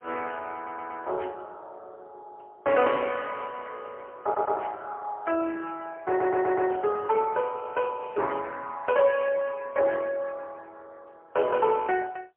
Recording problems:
phone line; 320 Hz to 3.2 kHz, AMR-NB, then MP3
audio stuttering; at 0.5 s, at 4 s and at 6 s

